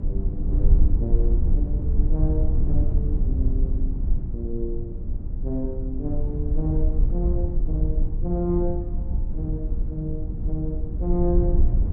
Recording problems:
electrical hum; 60 Hz, harmonics up to 360 Hz, SNR 11 dB
wind noise; below 64 Hz, SNR -5 dB

